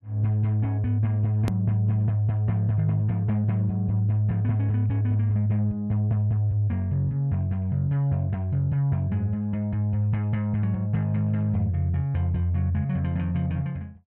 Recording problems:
hard cut with a click; at 1.5 s

